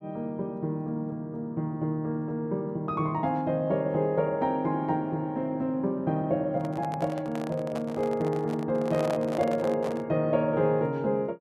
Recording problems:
microphone handling noise; from 6.5 to 10 s; peak -3 dB vs average level

